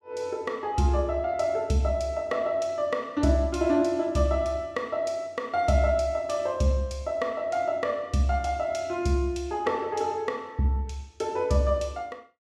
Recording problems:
none

